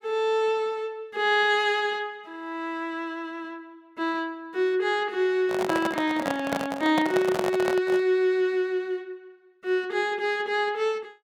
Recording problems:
microphone handling noise; from 5.5 to 8 s; peak +1 dB vs average level

